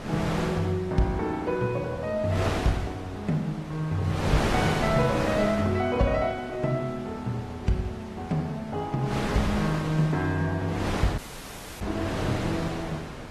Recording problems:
lossy compression; AAC, log-spectral distance 3 dB, nothing above 13.1 kHz
wind noise; below 1.4 kHz, SNR 5 dB
dropout; at 11 s for 0.5 s

